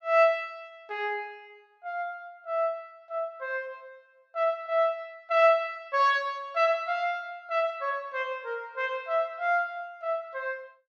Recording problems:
none

